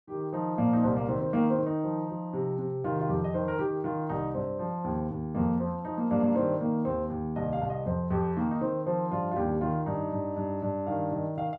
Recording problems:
none

